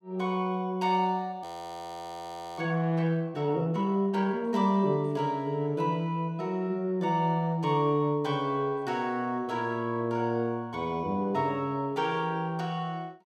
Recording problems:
audio freezing; at 1.5 s for 1 s

